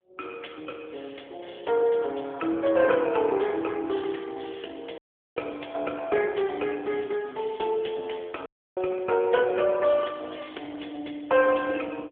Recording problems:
phone line; 260 Hz to 3.4 kHz, AMR-NB
audio cutting out; at 5 s and at 8.5 s

